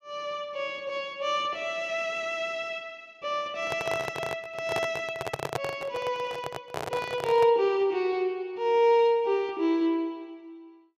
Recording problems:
microphone handling noise; from 3.5 to 7.5 s; peak +2 dB vs average level

